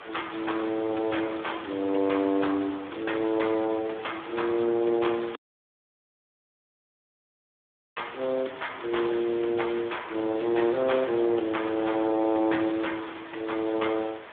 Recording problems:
phone line; 260 Hz to 3.6 kHz, Speex
hiss; SNR 15 dB
audio cutting out; at 5.5 s for 2.5 s

